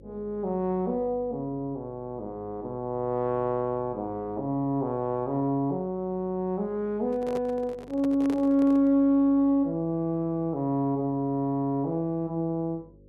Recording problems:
hum; 50 Hz, harmonics up to 550 Hz, SNR 25 dB
microphone handling noise; from 7 to 9 s; peak -5 dB vs average level

